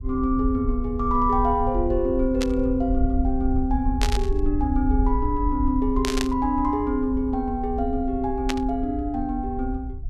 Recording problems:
rumble; below 64 Hz, SNR 5 dB
burst of static; 4 times, first at 2.5 s; peak +1 dB vs average level

